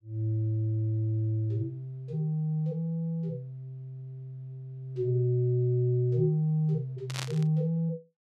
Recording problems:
static burst; at 7 s; peak -2 dB vs average level

